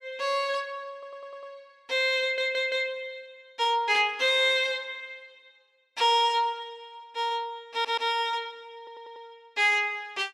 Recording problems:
audio stuttering; 4 times, first at 1 s

